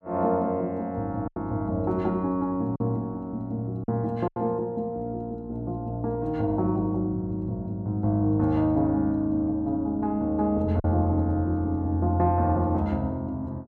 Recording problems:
packet loss; 2% of the sound replaced, filled with silence

